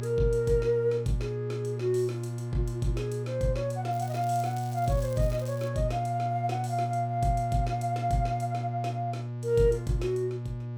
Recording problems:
electrical hum; 60 Hz, harmonics up to 840 Hz, SNR 4 dB
crackling; from 4 to 5.5 s; loose cable, SNR 20 dB

